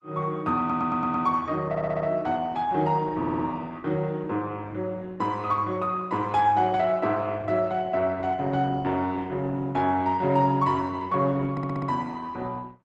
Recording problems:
lossy compression; Opus, log-spectral distance 2 dB
stutter; 4 times, first at 0.5 s

